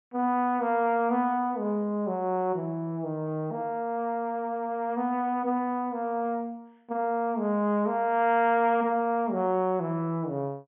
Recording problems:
low-pass filter; nothing above 3.4 kHz

